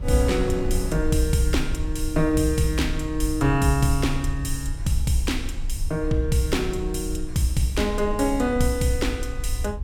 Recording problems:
low-frequency rumble; below 62 Hz, SNR 7 dB
wind on the microphone; below 230 Hz, SNR 17 dB

